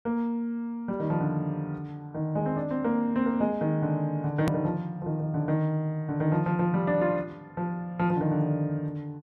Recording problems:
edit click; at 4.5 s

